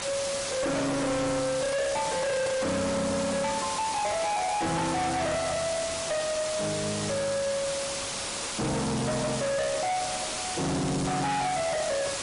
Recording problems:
lossy codec; MP3, log-spectral distance 12 dB, nothing above 10.4 kHz
distortion; hard clipping, signal-to-distortion ratio 6 dB
background hiss; slope -1 dB per octave, SNR 4 dB

